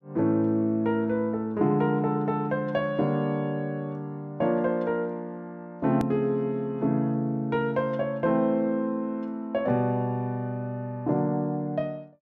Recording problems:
click at an edit; at 6 s

